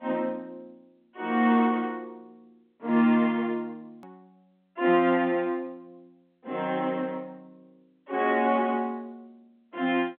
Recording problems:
telephone audio; 190 Hz to 3.8 kHz, G.711
click at an edit; at 4 s

